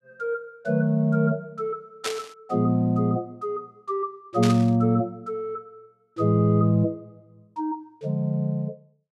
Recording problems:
static burst; at 2 s and at 4.5 s; peak -1 dB vs average level

